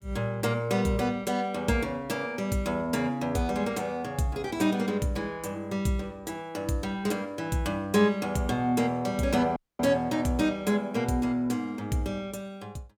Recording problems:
audio cutting out; at 9.5 s

